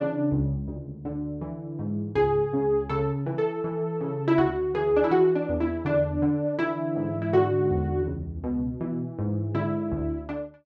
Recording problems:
none

